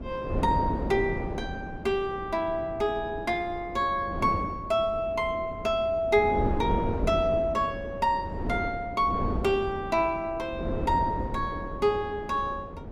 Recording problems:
wind on the microphone; below 390 Hz, SNR 7 dB

